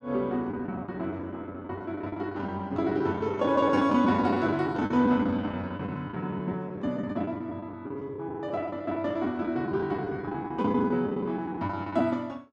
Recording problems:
lost packets; 16% of the sound replaced, filled with the last packet

